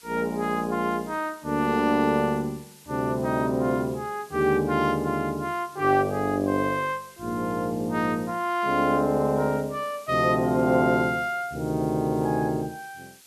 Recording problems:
background hiss; slope +2 dB per octave, SNR 24 dB

